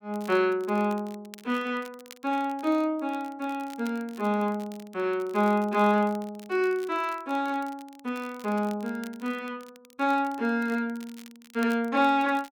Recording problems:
crackling; vinyl, SNR 24 dB

